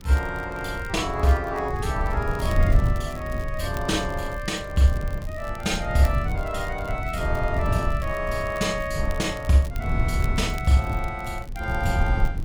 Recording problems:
rumble; below 100 Hz, SNR 3 dB
crackling; vinyl, SNR 23 dB

